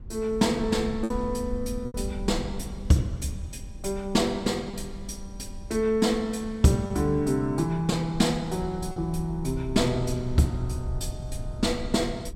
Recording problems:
low-frequency rumble; below 80 Hz, SNR 12 dB
packet loss; 2% of the sound replaced, filled with repeated pitch periods

